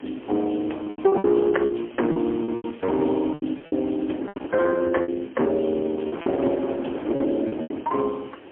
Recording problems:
telephone audio; 220 Hz to 3.2 kHz, AMR-NB, then MP3
distortion; hard clipping, signal-to-distortion ratio 13 dB
hiss; SNR 28 dB
wind on the microphone; below 640 Hz, SNR 13 dB
lost packets; 13% of the sound replaced, filled with repeated pitch periods

